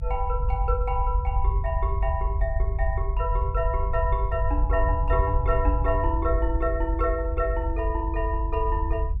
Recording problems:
rumble; below 74 Hz, SNR -1 dB

